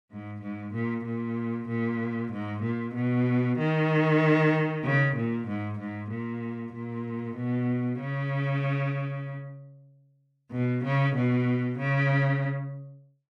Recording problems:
none

